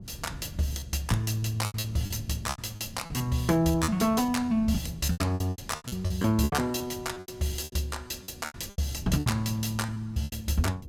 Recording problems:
wind noise; below 180 Hz, SNR 16 dB
lost packets; 16% of the sound replaced, filled with repeated pitch periods

